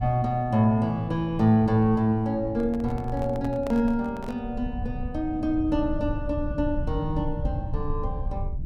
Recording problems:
low-frequency rumble; below 98 Hz, SNR 9 dB
handling noise; from 2.5 to 4.5 s; peak -8 dB vs average level

